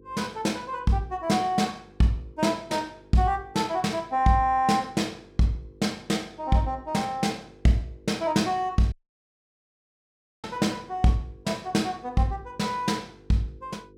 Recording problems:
hum; 50 Hz, harmonics up to 500 Hz, SNR 26 dB
dropout; at 9 s for 1.5 s

